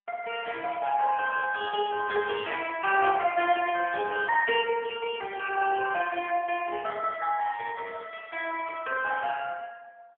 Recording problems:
phone line; 280 Hz to 3.3 kHz, AMR-NB

